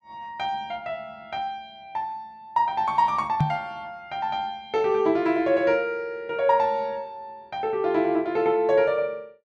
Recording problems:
microphone bump; at 3.5 s; peak +5 dB vs average level

